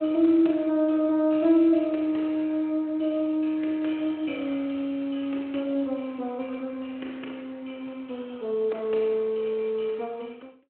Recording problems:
phone line; 240 Hz to 3.3 kHz, Speex

